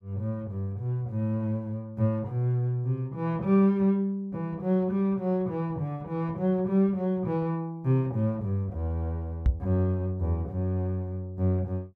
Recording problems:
microphone thump; at 9.5 s; peak +7 dB vs average level

